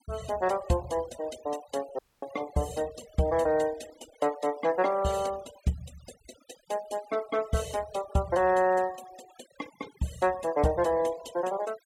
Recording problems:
denoising artefacts; signal-to-artefact ratio 20 dB
audio cutting out; at 2 s

